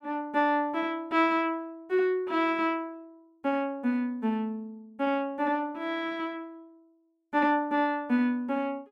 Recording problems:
none

